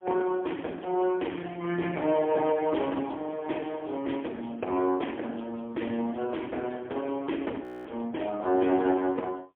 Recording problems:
telephone audio; 220 Hz to 3.4 kHz, AMR-NB, then MP3
audio freezing; at 7.5 s

